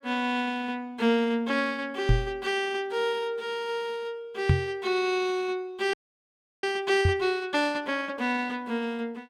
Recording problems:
knock on the microphone; at 2 s, at 4.5 s and at 7 s; peak +9 dB vs average level
audio freezing; at 6 s for 0.5 s

